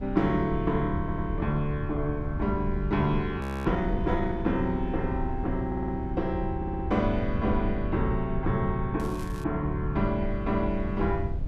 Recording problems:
low-frequency rumble; below 70 Hz, SNR 14 dB
wind noise; below 110 Hz, SNR 6 dB
audio stuttering; at 1 s, at 5.5 s and at 6.5 s
frozen audio; at 3.5 s
crackle; at 9 s; loose cable, SNR 22 dB

